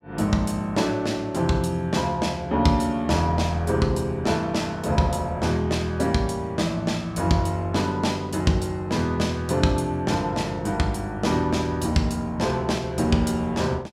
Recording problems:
none

